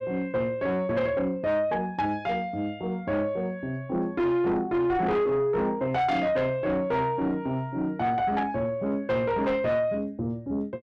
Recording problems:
distorted audio; soft clipping, signal-to-distortion ratio 11 dB

